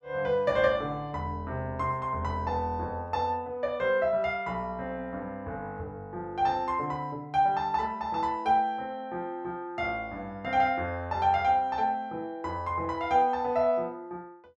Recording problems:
none

